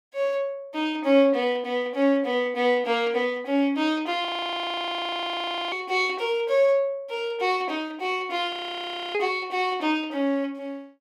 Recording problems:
audio freezing; at 4.5 s for 1.5 s and at 8.5 s for 0.5 s

